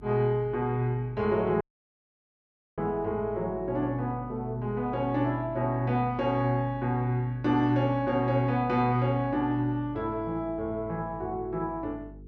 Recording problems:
hum; 50 Hz, harmonics up to 450 Hz, SNR 20 dB
dropout; at 1.5 s for 1 s

